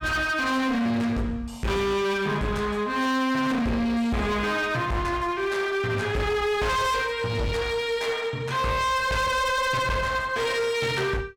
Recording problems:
distorted audio; hard clipping, uneven, signal-to-distortion ratio 6 dB

